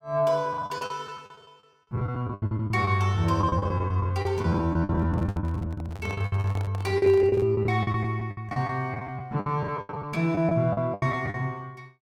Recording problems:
lost packets; 20% of the sound replaced, filled with the last packet
microphone handling noise; from 5 to 7.5 s; peak -10 dB vs average level

